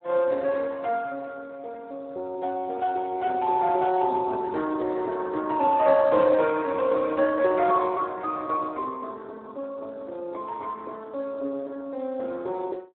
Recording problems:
telephone audio; 260 Hz to 3.6 kHz, Speex

